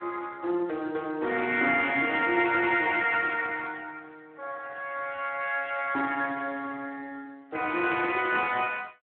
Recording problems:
telephone audio; 220 Hz to 3.5 kHz, Speex

